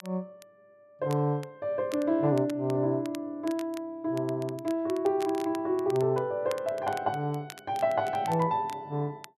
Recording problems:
crackling; vinyl, SNR 20 dB

